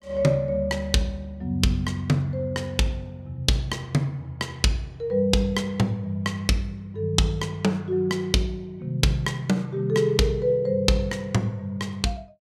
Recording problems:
none

